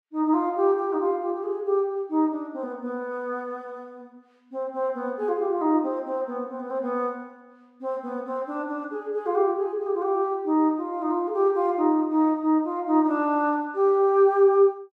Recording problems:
none

